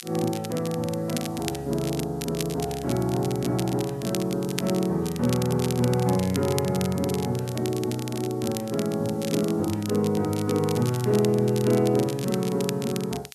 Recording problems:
background hiss; SNR 27 dB
crackling; vinyl, SNR 12 dB

